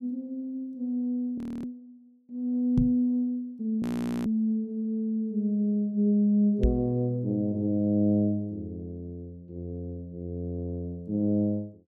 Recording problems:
audio freezing; at 1.5 s and at 4 s
microphone bump; at 3 s and at 6.5 s; peak +6 dB vs average level

